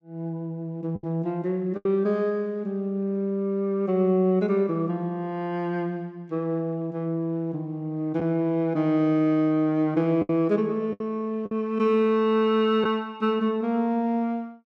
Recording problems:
lost packets; 2% of the sound replaced, filled with the last packet

